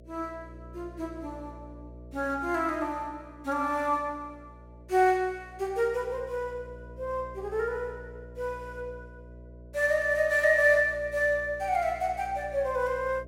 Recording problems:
hum; 60 Hz, harmonics up to 660 Hz, SNR 19 dB

